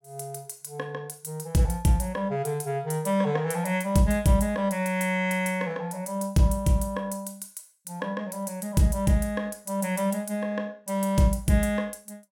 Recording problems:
none

